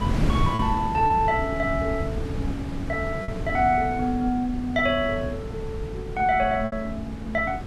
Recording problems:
wind noise; below 210 Hz, SNR 6 dB
lost packets; 2% of the sound replaced, filled with repeated pitch periods

